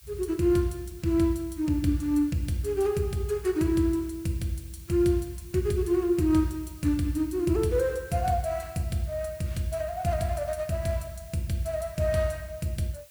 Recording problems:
hiss; slope +2 dB per octave, SNR 23 dB

